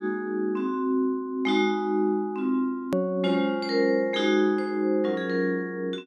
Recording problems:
edit click; at 3 s

